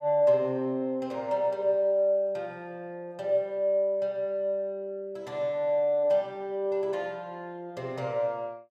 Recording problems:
none

